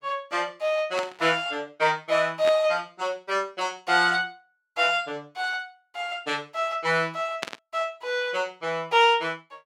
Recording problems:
static burst; at 1 s, at 2.5 s and at 7.5 s; peak 0 dB vs average level

